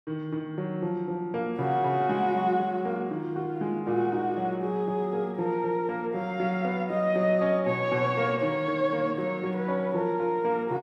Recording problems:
none

